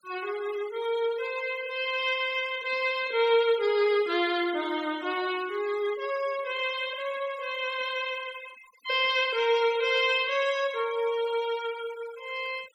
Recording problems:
noise reduction artefacts; signal-to-artefact ratio 19 dB

